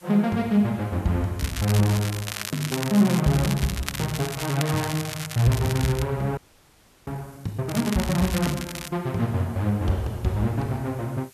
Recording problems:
hiss; slope 0 dB per octave, SNR 27 dB
crackle; from 1.5 to 6 s and from 7.5 to 9 s; loose cable, SNR 8 dB
frozen audio; at 6.5 s for 0.5 s

